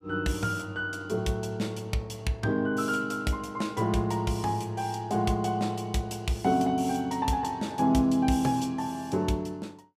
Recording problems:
none

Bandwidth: 15.5 kHz